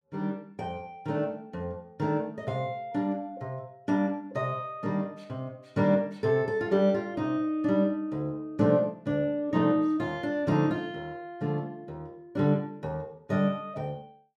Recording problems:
none

